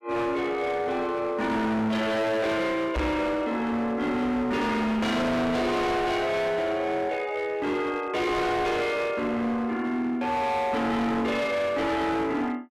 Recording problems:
distortion; hard clipping, signal-to-distortion ratio 7 dB
microphone bump; at 3 s; peak +1 dB vs average level

